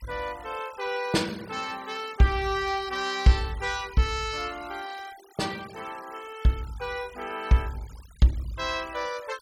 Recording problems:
noise reduction artefacts; signal-to-artefact ratio 19 dB

